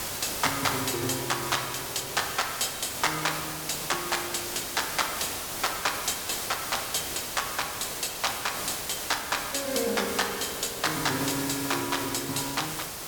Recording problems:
background hiss; slope -2 dB per octave, SNR 3 dB

